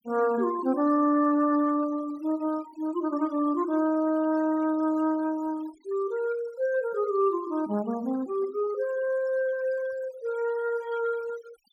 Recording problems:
denoising artefacts; signal-to-artefact ratio 21 dB

